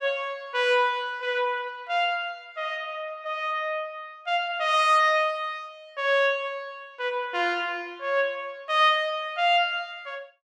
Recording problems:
none

